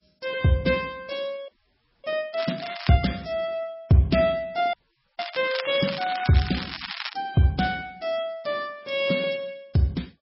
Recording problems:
codec artefacts; MP3, log-spectral distance 7 dB, nothing above 5.5 kHz
frozen audio; at 1.5 s for 0.5 s and at 4.5 s
crackling; at 2.5 s and from 5 to 7 s; loose cable, SNR 9 dB

